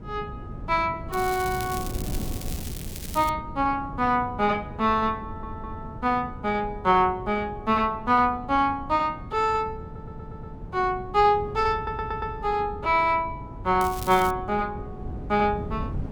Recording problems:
wind on the microphone; below 210 Hz, SNR 13 dB
crackle; from 1 to 3.5 s and at 14 s; loose cable, SNR 13 dB
stutter; at 5 s, at 10 s and at 12 s

